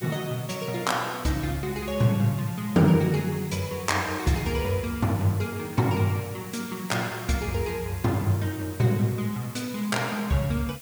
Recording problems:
background hiss; slope +1 dB per octave, SNR 16 dB

